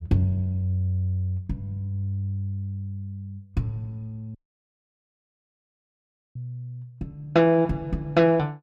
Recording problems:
dropout; at 4.5 s for 2 s

